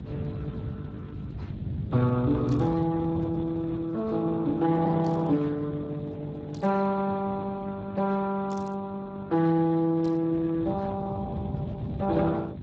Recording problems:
codec artefacts; Speex, log-spectral distance 3 dB
electrical hum; 50 Hz, harmonics up to 450 Hz, SNR 19 dB
low-frequency rumble; below 190 Hz, SNR 11 dB
static burst; 5 times, first at 2.5 s; peak -16 dB vs average level

